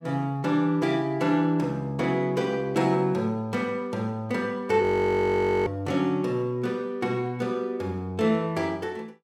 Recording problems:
frozen audio; at 5 s for 1 s

